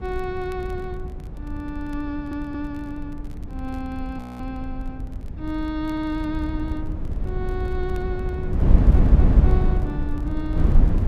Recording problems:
wind noise; below 90 Hz, SNR -7 dB
crackling; vinyl, SNR 27 dB
audio stuttering; at 2 s, at 6 s and at 9 s
audio freezing; at 4 s

